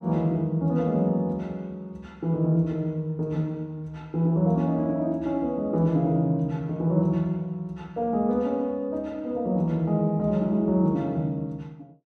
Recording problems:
none

